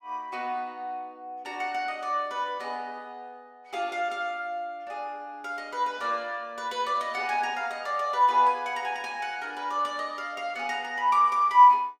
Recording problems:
none

